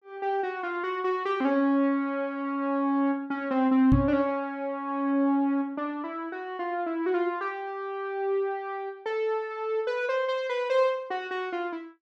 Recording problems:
microphone bump; at 4 s; peak +6 dB vs average level

